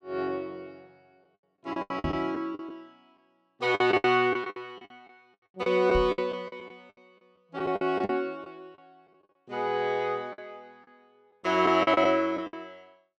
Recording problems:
lost packets; 13% of the sound replaced, filled with the last packet
microphone thump; at 2 s, at 6 s and at 8 s; peak -2 dB vs average level

